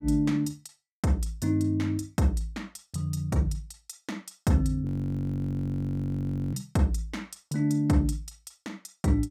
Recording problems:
audio freezing; at 5 s for 1.5 s

